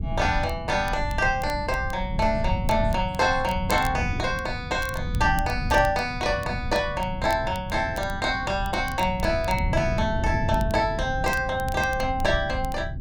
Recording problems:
low-frequency rumble; below 120 Hz, SNR 8 dB
wind on the microphone; below 160 Hz, SNR 11 dB
crackle; vinyl, SNR 20 dB

